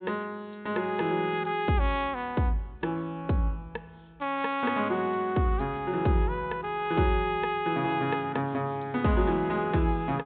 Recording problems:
treble cut off; nothing above 4 kHz

